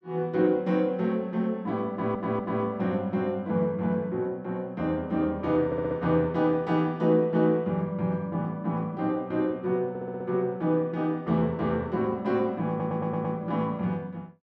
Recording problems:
audio stuttering; 4 times, first at 2 s

